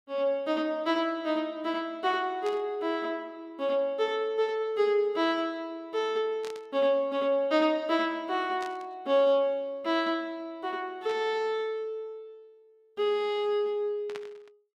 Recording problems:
static burst; 5 times, first at 2.5 s; peak -10 dB vs average level

